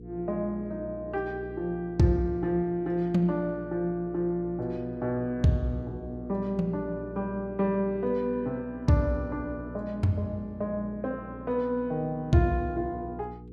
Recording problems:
mains hum; 60 Hz, harmonics up to 480 Hz, SNR 14 dB

